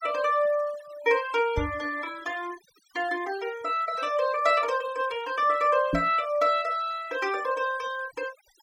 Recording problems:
noise reduction artefacts; signal-to-artefact ratio 20 dB
knock on the microphone; at 1.5 s and at 6 s; peak +3 dB vs average level

